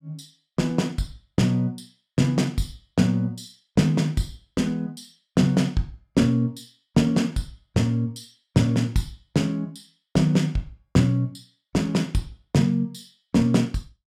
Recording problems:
none

